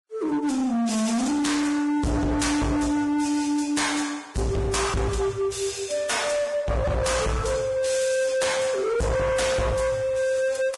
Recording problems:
lossy compression; Vorbis, log-spectral distance 4 dB, nothing above 10.7 kHz
distortion; hard clipping, signal-to-distortion ratio 7 dB

